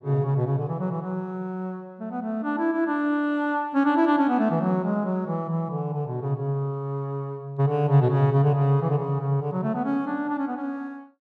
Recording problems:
none

